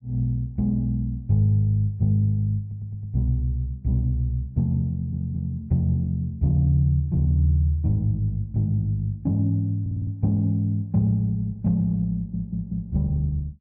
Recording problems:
stutter; 4 times, first at 2.5 s

